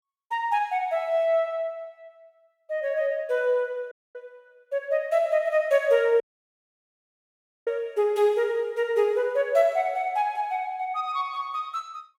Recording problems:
audio cutting out; at 4 s and at 6 s for 1.5 s

